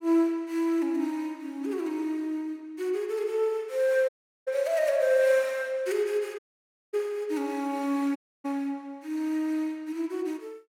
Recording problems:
dropout; at 4 s, at 6.5 s for 0.5 s and at 8 s

